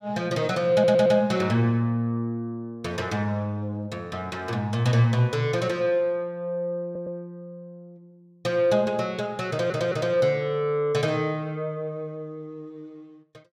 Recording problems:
stutter; at 0.5 s, at 7 s and at 9.5 s

